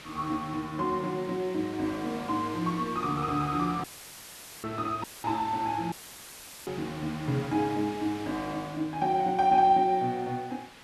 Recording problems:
background hiss; SNR 17 dB
audio cutting out; at 4 s for 1 s, at 5 s and at 6 s for 1 s; filled with static

